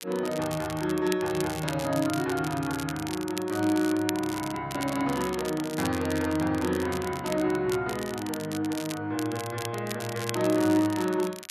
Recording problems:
crackle; vinyl, SNR 11 dB

